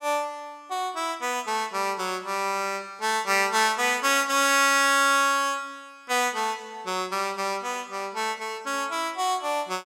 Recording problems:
none

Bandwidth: 16.5 kHz